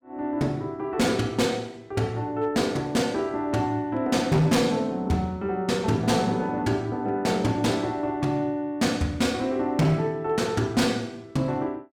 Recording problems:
distortion; hard clipping, signal-to-distortion ratio 11 dB

